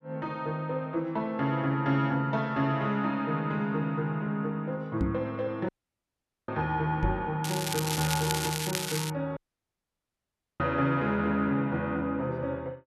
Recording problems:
microphone bump; at 5 s and at 7 s; peak +4 dB vs average level
dropout; at 5.5 s for 1 s and at 9.5 s for 1 s
crackling; from 7.5 to 9 s; loose cable, SNR 3 dB

